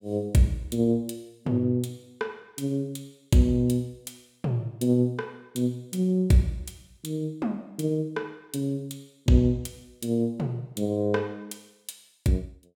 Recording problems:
none

